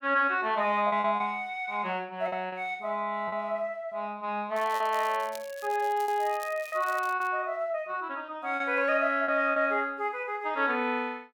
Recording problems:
packet loss; 5% of the sound replaced, filled with repeated pitch periods
crackling; from 4.5 to 7.5 s; loose cable, SNR 19 dB

